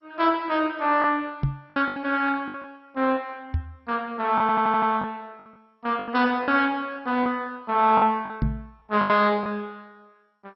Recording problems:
lossy codec; MP2, log-spectral distance 3 dB, nothing above 5.3 kHz
packet loss; 7% of the sound replaced, filled with the last packet
microphone bump; at 1.5 s, at 3.5 s and at 8.5 s; peak +3 dB vs average level
stutter; at 4.5 s

